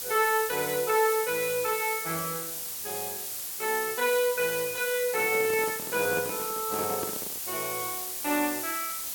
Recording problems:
hiss; slope +1 dB per octave, SNR 4 dB
handling noise; from 5 to 7.5 s; peak -3 dB vs average level

